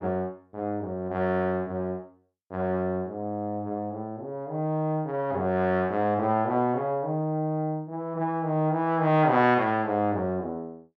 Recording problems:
none

